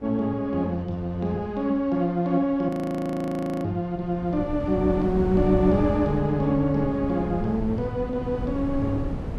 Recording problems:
wind on the microphone; below 240 Hz, SNR 7 dB
audio freezing; at 2.5 s for 1 s

